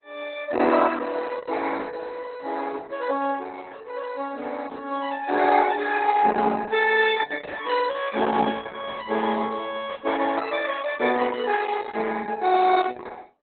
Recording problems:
lossy codec; Opus, log-spectral distance 6 dB, nothing above 3.7 kHz

